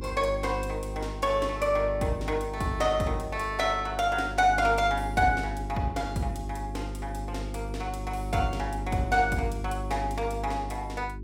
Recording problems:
hum; 50 Hz, harmonics up to 400 Hz, SNR 8 dB

